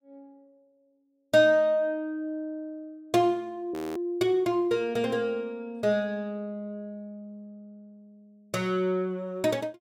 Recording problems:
audio freezing; at 3.5 s

